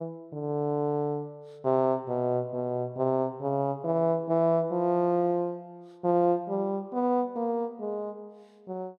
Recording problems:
none

